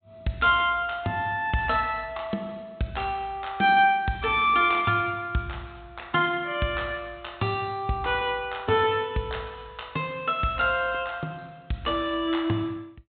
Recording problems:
low-pass filter; nothing above 4 kHz

